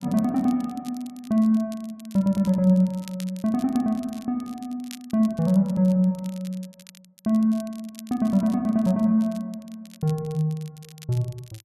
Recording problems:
crackle; vinyl, SNR 24 dB

